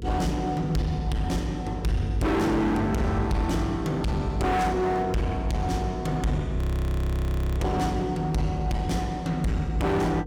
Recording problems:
distorted audio; hard clipping, signal-to-distortion ratio 6 dB
electrical hum; 50 Hz, harmonics up to 500 Hz, SNR 12 dB
audio freezing; at 6.5 s for 1 s

